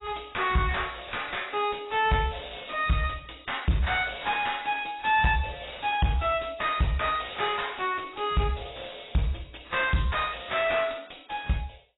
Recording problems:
lossy codec; AAC, log-spectral distance 12 dB, nothing above 3.8 kHz
distorted audio; soft clipping, signal-to-distortion ratio 7 dB

